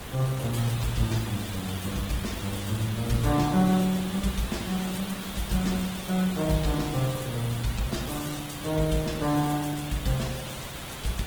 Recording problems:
lossy compression; Opus, then Opus, log-spectral distance 6 dB
hum; 60 Hz, harmonics up to 660 Hz, SNR 30 dB
hiss; SNR 9 dB

